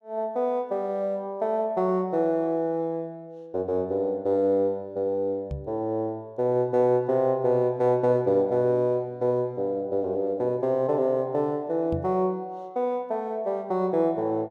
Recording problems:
knock on the microphone; at 5.5 s and at 12 s; peak -2 dB vs average level

